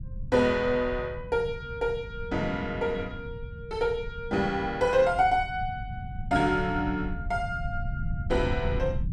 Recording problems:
rumble; below 130 Hz, SNR 10 dB

